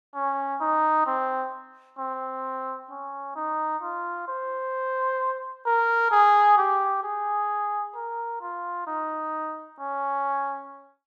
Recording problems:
none

